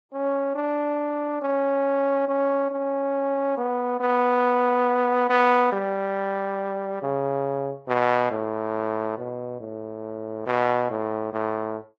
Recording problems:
lossy compression; Vorbis, log-spectral distance 2 dB

